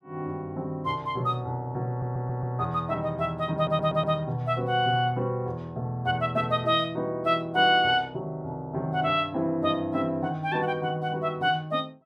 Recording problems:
stutter; at 2 s and at 3.5 s

